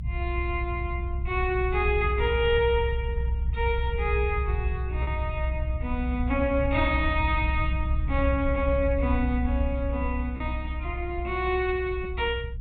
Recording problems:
treble cut off; nothing above 4 kHz
rumble; below 70 Hz, strongest tone 62 Hz, SNR 2 dB
packet loss; 0.6% of the sound replaced, filled with repeated pitch periods

